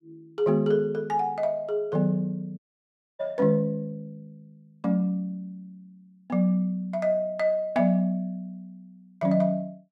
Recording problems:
dropout; at 2.5 s for 0.5 s

